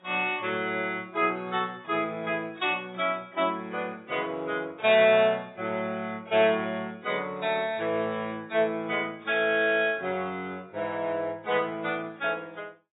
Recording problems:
codec artefacts; AAC, log-spectral distance 2 dB, nothing above 3.8 kHz

